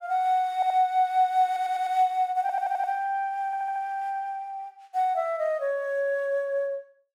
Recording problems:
audio stuttering; 4 times, first at 0.5 s

